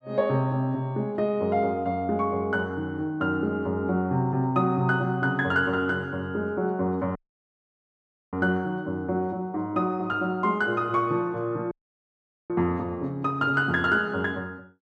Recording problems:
audio cutting out; at 7 s for 1 s and at 12 s for 1 s

